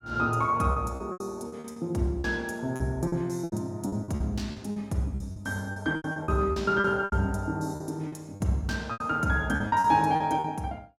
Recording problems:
lost packets; 14% of the sound replaced, filled with repeated pitch periods

